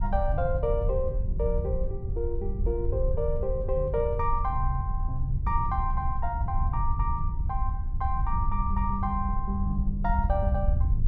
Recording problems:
wind on the microphone; below 76 Hz, SNR 0 dB

